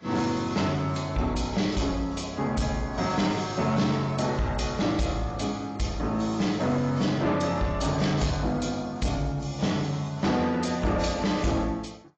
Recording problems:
codec artefacts; AAC, log-spectral distance 4 dB, nothing above 7.3 kHz
distorted audio; soft clipping, signal-to-distortion ratio 12 dB

